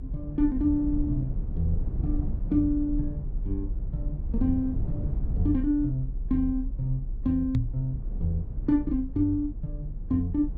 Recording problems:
low-frequency rumble; below 74 Hz, strongest tone 34 Hz, SNR 5 dB
knock on the microphone; at 7.5 s; peak +6 dB vs average level

